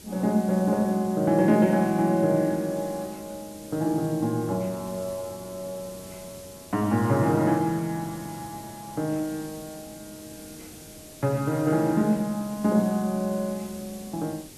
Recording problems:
hiss; SNR 18 dB

